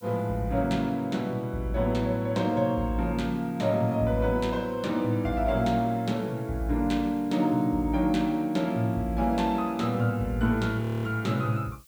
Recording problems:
background hiss; slope +4 dB per octave, SNR 29 dB
audio freezing; at 11 s

